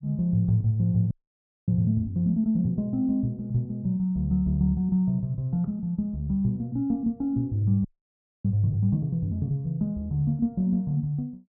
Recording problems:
frozen audio; at 1 s for 0.5 s and at 8 s for 0.5 s

